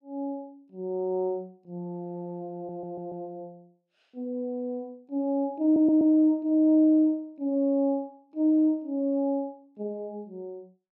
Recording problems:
stutter; at 2.5 s and at 5.5 s

